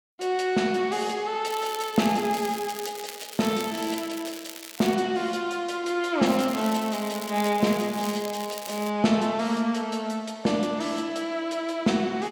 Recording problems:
crackle; from 1.5 to 5 s and from 6.5 to 9 s; loose cable, SNR 13 dB

